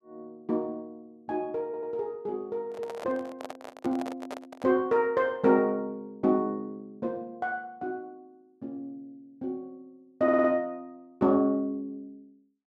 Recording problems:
stutter; at 1.5 s and at 10 s
microphone handling noise; from 2.5 to 4.5 s; peak -5 dB vs average level

